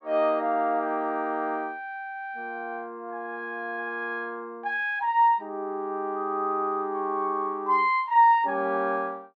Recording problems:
none

